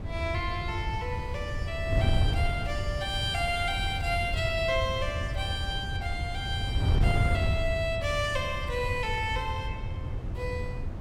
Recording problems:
wind noise; below 120 Hz, SNR 1 dB

